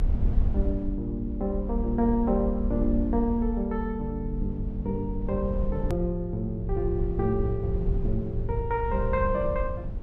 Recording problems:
rumble; below 66 Hz, SNR 4 dB
click at an edit; at 6 s

